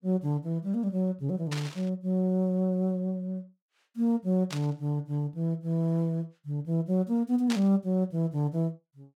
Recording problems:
burst of static; at 1.5 s, at 4.5 s and at 7.5 s; peak -2 dB vs average level

